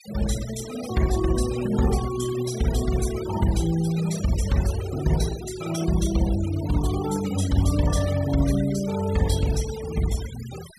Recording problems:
noise reduction artefacts; signal-to-artefact ratio 14 dB

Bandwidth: 14.5 kHz